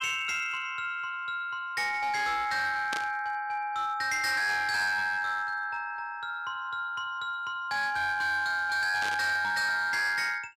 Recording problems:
distorted audio; hard clipping, signal-to-distortion ratio 11 dB
burst of static; at 3 s and at 9 s; peak -2 dB vs average level

